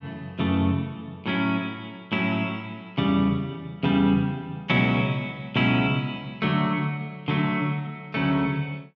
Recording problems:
none

